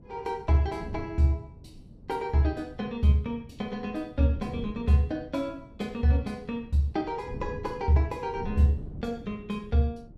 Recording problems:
wind noise; below 200 Hz, SNR 16 dB

